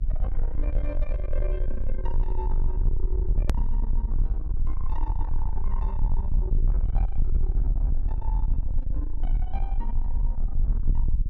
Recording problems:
distortion; soft clipping, signal-to-distortion ratio 8 dB
hum; 50 Hz, harmonics up to 600 Hz, SNR 17 dB
low-frequency rumble; below 46 Hz, strongest tone 20 Hz, SNR -11 dB
hard cut with a click; at 3.5 s

